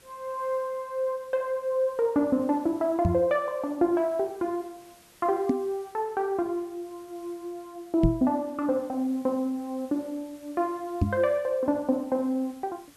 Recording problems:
hiss; slope -2 dB per octave, SNR 27 dB
microphone bump; 4 times, first at 3 s; peak +7 dB vs average level

